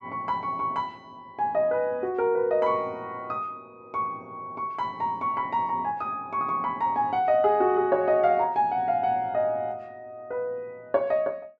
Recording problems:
none

